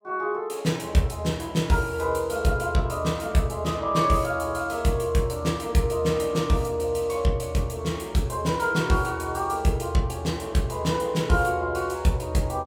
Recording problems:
none

